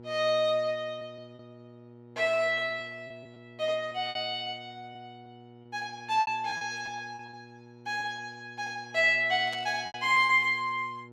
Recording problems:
hum; 60 Hz, harmonics up to 1.3 kHz, SNR 22 dB
lost packets; 8% of the sound replaced, filled with repeated pitch periods
static burst; at 9.5 s; peak -10 dB vs average level

